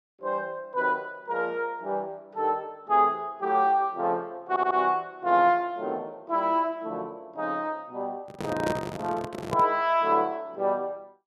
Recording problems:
audio stuttering; at 4.5 s
microphone handling noise; from 8.5 to 9.5 s; peak 0 dB vs average level

